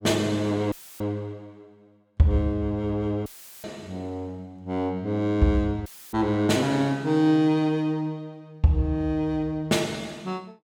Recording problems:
audio cutting out; at 0.5 s, at 3.5 s and at 6 s; filled with static

